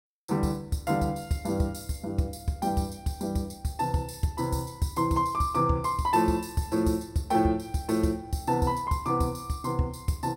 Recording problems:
none

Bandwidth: 16.5 kHz